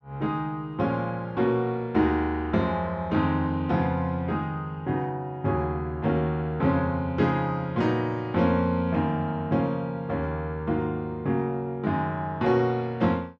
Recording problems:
none

